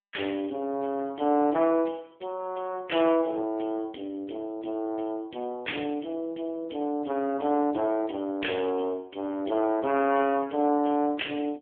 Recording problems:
telephone audio; 220 Hz to 3.4 kHz, AMR-NB

